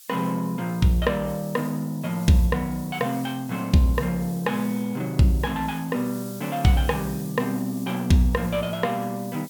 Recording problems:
background hiss; slope +5 dB per octave, SNR 18 dB

